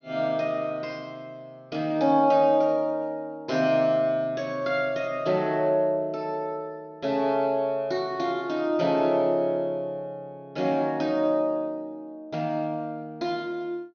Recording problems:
treble cut off; nothing above 6.5 kHz

